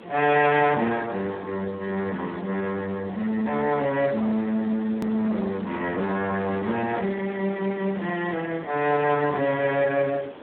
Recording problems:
phone line; 240 Hz to 3.3 kHz, Speex
distorted audio; hard clipping, signal-to-distortion ratio 15 dB
background hiss; SNR 17 dB
edit click; at 5 s

